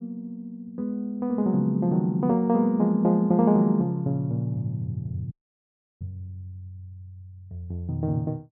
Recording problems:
audio cutting out; at 5.5 s for 0.5 s

